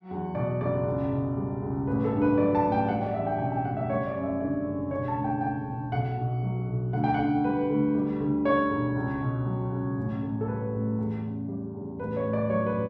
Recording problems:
none

